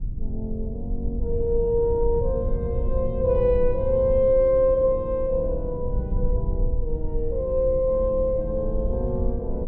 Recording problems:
rumble; below 70 Hz, SNR 6 dB

